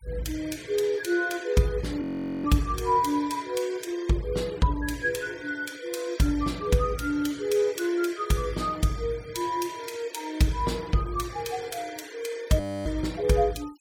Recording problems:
denoising artefacts; signal-to-artefact ratio 20 dB
frozen audio; at 2 s and at 13 s

